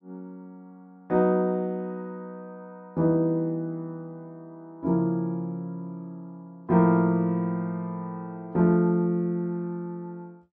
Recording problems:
none

